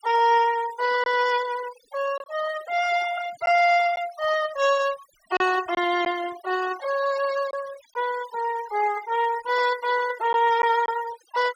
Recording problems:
noise reduction artefacts; signal-to-artefact ratio 16 dB
packet loss; 2% of the sound replaced, filled with silence

